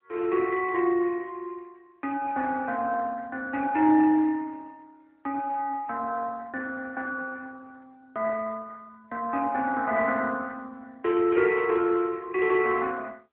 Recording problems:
telephone audio; 260 Hz to 3.1 kHz, AMR-NB

